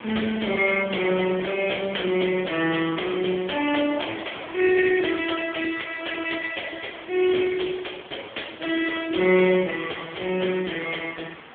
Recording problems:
telephone audio; 240 Hz to 3.5 kHz, AMR-NB
hiss; SNR 19 dB
wind on the microphone; below 1.8 kHz, SNR 23 dB

